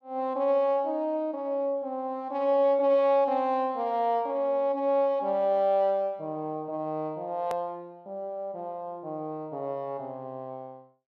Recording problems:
hard cut with a click; at 7.5 s

